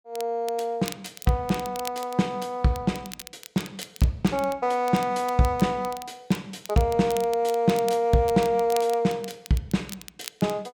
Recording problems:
crackling; vinyl, SNR 17 dB

